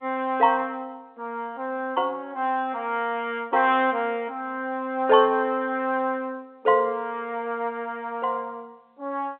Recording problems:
phone line; 190 Hz to 3.6 kHz, G.711

